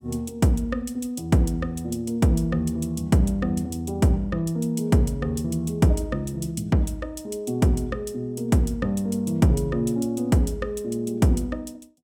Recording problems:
none

